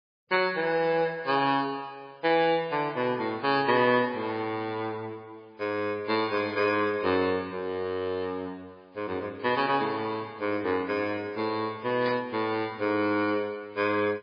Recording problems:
lossy compression; MP3, log-spectral distance 3 dB
burst of static; at 12 s; peak -4 dB vs average level

